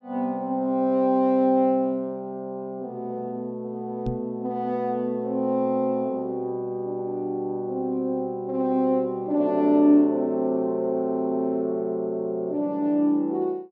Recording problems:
microphone bump; at 4 s; peak -2 dB vs average level

